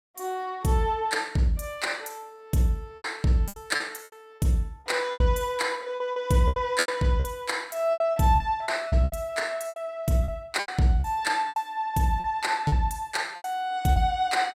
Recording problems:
packet loss; 11% of the sound replaced, filled with repeated pitch periods

